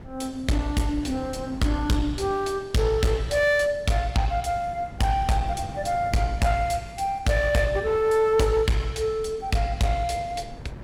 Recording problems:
distorted audio; hard clipping, uneven, signal-to-distortion ratio 9 dB
wind noise; below 270 Hz, SNR 17 dB

